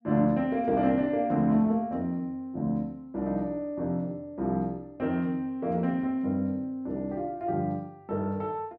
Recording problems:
none

